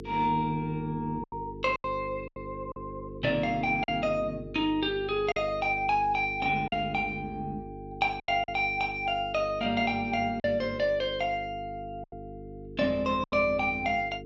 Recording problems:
hum; 50 Hz, harmonics up to 450 Hz, SNR 13 dB
lost packets; 5% of the sound replaced, filled with silence

